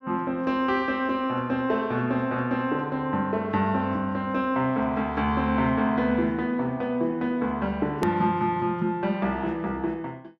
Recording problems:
hard cut with a click; at 8 s

